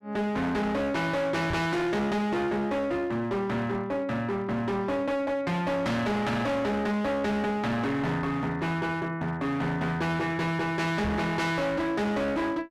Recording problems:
distorted audio; hard clipping, signal-to-distortion ratio 7 dB
knock on the microphone; at 1.5 s and at 11 s; peak 0 dB vs average level

